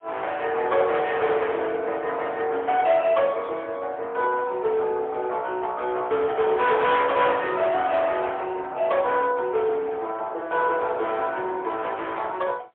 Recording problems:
phone line; 340 Hz to 3.5 kHz, AMR-NB, then MP3
distorted audio; hard clipping, signal-to-distortion ratio 9 dB

